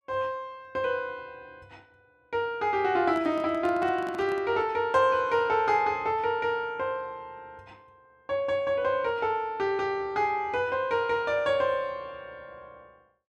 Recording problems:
microphone handling noise; from 3 to 4.5 s; peak -10 dB vs average level

